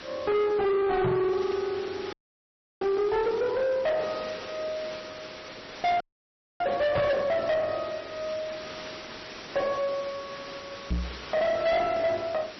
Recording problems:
codec artefacts; MP3, log-spectral distance 7 dB, nothing above 5.7 kHz
distortion; soft clipping, signal-to-distortion ratio 7 dB
hiss; slope -2 dB per octave, SNR 14 dB
microphone bump; at 1 s, at 7 s and at 11 s; peak +4 dB vs average level
frozen audio; at 2 s for 0.5 s and at 6 s for 0.5 s

